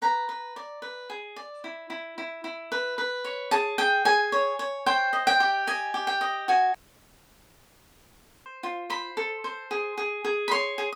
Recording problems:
audio cutting out; at 7 s for 1.5 s

